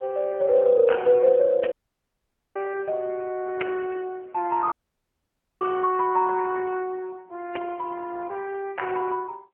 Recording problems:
telephone audio; 240 Hz to 3 kHz, AMR-NB
dropout; at 1.5 s for 1 s and at 4.5 s for 1 s

